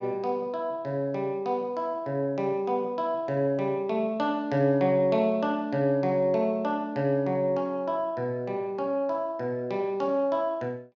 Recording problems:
treble missing; nothing above 8 kHz

